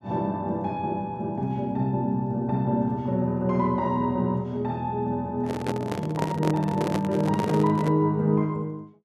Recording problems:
microphone handling noise; from 5.5 to 8 s; peak +2 dB vs average level

